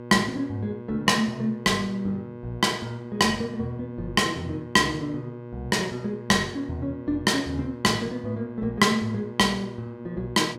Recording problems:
hum; 60 Hz, harmonics up to 1.6 kHz, SNR 14 dB

